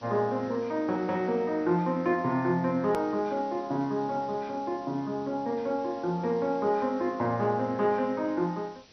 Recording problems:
codec artefacts; MP2, log-spectral distance 3 dB, nothing above 13.1 kHz
background hiss; SNR 27 dB
hard cut with a click; at 3 s

